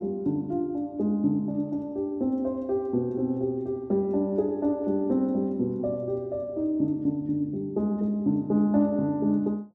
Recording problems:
none

